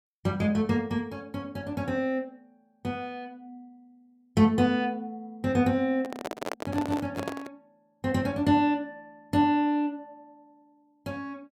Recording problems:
microphone handling noise; from 6 to 7.5 s; peak -1 dB vs average level

